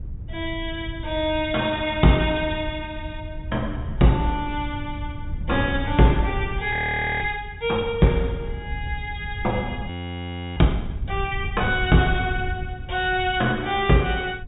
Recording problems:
treble missing; nothing above 4 kHz
wind on the microphone; below 100 Hz, SNR 10 dB
audio freezing; at 6.5 s and at 10 s for 0.5 s

